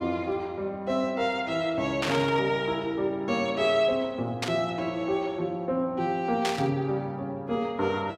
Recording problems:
static burst; at 2 s, at 4.5 s and at 6.5 s; peak +2 dB vs average level

